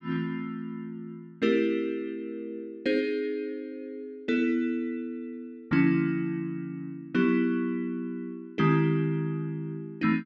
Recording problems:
none

